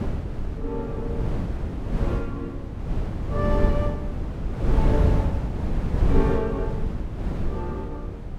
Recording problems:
wind on the microphone; below 160 Hz, SNR -4 dB

